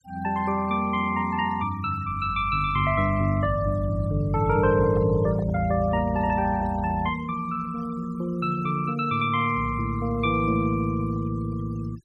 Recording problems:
noise reduction artefacts; signal-to-artefact ratio 21 dB
microphone handling noise; from 4.5 to 7 s; peak -12 dB vs average level

